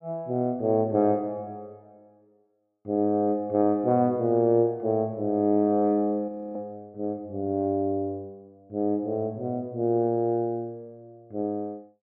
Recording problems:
audio freezing; at 6.5 s

